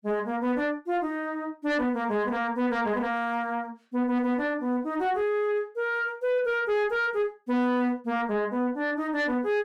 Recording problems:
distorted audio; soft clipping, signal-to-distortion ratio 10 dB

